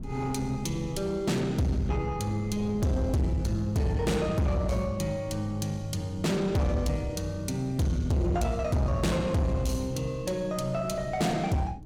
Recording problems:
distortion; soft clipping, signal-to-distortion ratio 7 dB
wind noise; below 230 Hz, SNR 16 dB

